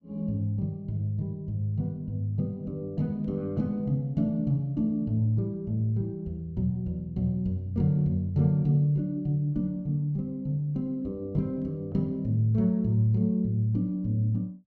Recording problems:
none

